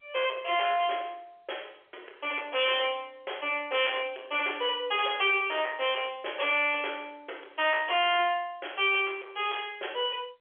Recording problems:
phone line; 320 Hz to 3.4 kHz, G.711
distortion; soft clipping, signal-to-distortion ratio 8 dB

